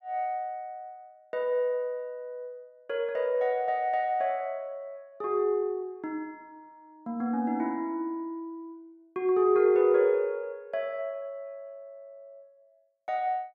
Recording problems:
none

